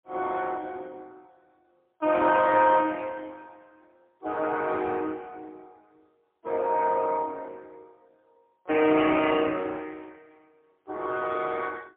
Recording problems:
telephone audio; 190 Hz to 3.4 kHz, AMR-NB, then MP3

